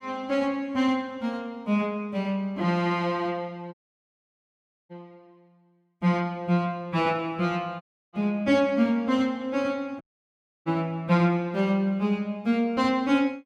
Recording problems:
audio cutting out; at 3.5 s for 1 s, at 8 s and at 10 s for 0.5 s

